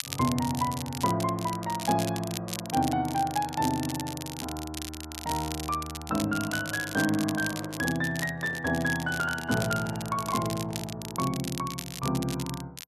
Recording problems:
crackle; vinyl, SNR 9 dB
microphone handling noise; from 7.5 to 11 s; peak -10 dB vs average level

